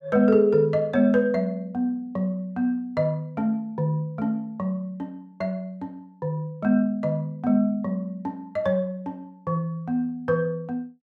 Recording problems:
none

